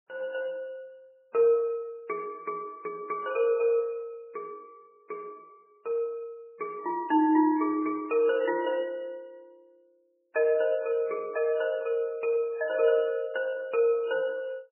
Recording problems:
lossy codec; MP3, log-spectral distance 2 dB, nothing above 2.5 kHz

